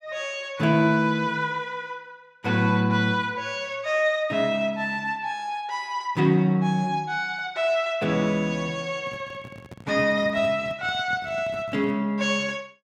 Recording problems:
handling noise; from 9 to 12 s; peak -10 dB vs average level

